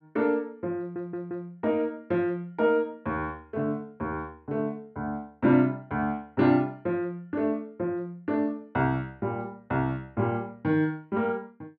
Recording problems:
audio stuttering; at 1 s

